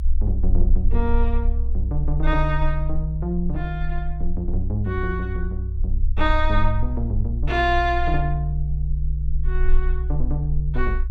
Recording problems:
rumble; below 60 Hz, strongest tone 20 Hz, SNR 0 dB

